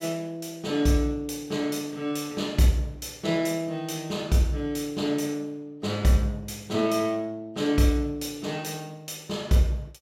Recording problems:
none

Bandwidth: 16 kHz